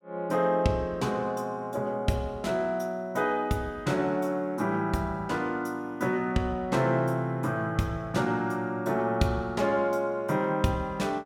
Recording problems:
none

